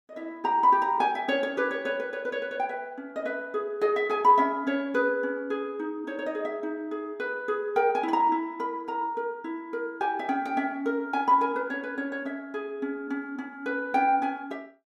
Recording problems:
none

